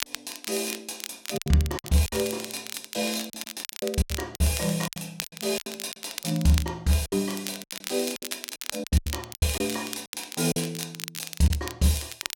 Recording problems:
crackling; vinyl, SNR 9 dB
lost packets; 13% of the sound replaced, filled with silence

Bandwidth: 16.5 kHz